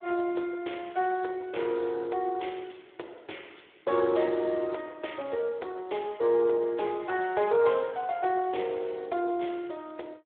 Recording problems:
telephone audio; 300 Hz to 3.6 kHz, Speex

